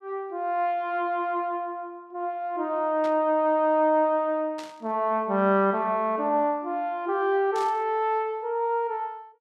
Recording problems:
static burst; at 3 s, at 4.5 s and at 7.5 s; peak -12 dB vs average level

